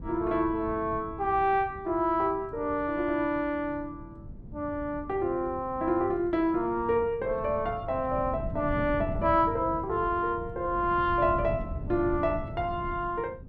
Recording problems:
wind on the microphone; below 190 Hz, SNR 12 dB

